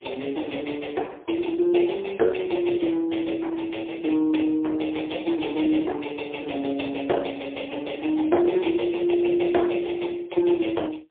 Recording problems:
telephone audio; 280 Hz to 3.5 kHz, AMR-NB, then MP3

